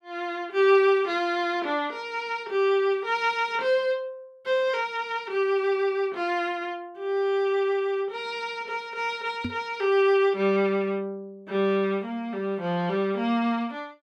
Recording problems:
knock on the microphone; at 9.5 s; peak -2 dB vs average level

